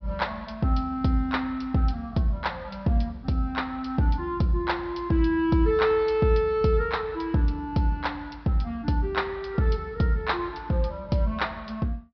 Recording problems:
low-pass filter; nothing above 5.5 kHz

